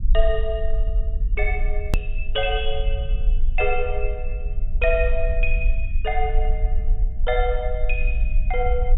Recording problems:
treble missing; nothing above 4 kHz
low-frequency rumble; below 46 Hz, strongest tone 18 Hz, SNR -1 dB
click at an edit; at 2 s

